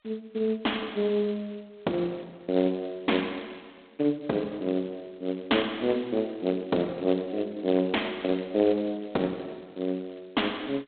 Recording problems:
telephone audio; 240 Hz to 3.7 kHz, G.726

